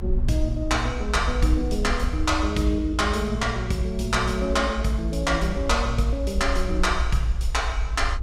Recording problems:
low-frequency rumble; below 62 Hz, SNR 4 dB

